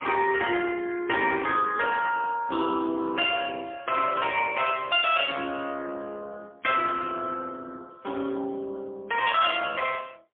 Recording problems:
phone line; 240 Hz to 3.3 kHz, AMR-NB, then MP3

